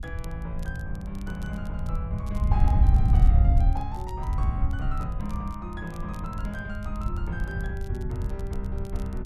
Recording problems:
wind on the microphone; below 86 Hz, SNR -8 dB
crackle; vinyl, SNR 20 dB

